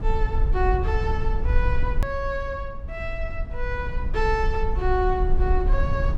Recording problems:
rumble; below 60 Hz, SNR -1 dB
edit click; at 2 s

